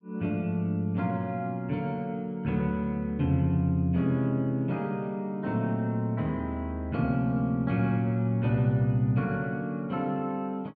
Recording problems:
none

